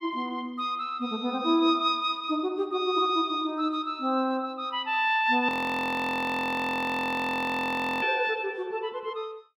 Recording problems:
audio freezing; at 5.5 s for 2.5 s

